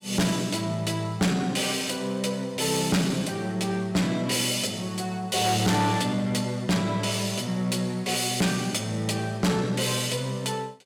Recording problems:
distorted audio; soft clipping, signal-to-distortion ratio 6 dB

